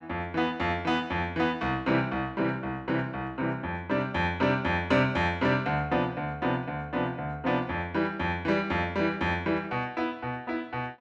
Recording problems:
none

